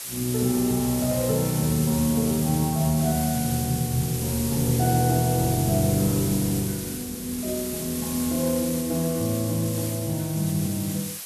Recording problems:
hiss; slope +2 dB per octave, SNR 7 dB

